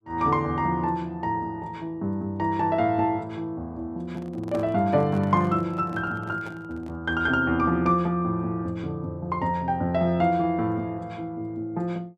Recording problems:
handling noise; from 4 to 7 s; peak -9 dB vs average level

